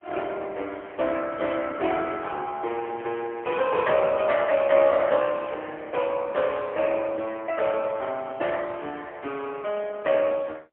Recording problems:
telephone audio; 320 Hz to 3.5 kHz, AMR-NB, then MP3

